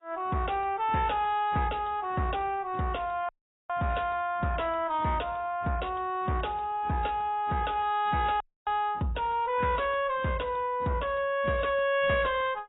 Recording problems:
lossy codec; AAC, log-spectral distance 3 dB, nothing above 3.7 kHz
distorted audio; soft clipping, signal-to-distortion ratio 10 dB
dropout; at 3.5 s and at 8.5 s

